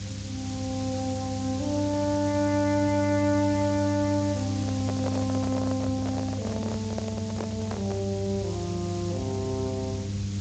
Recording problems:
lossy codec; Speex, log-spectral distance 14 dB
hum; 50 Hz, harmonics up to 500 Hz, SNR 4 dB
hiss; slope +3 dB per octave, SNR 12 dB
rumble; below 180 Hz, SNR 14 dB
handling noise; from 4.5 to 8 s; peak -1 dB vs average level

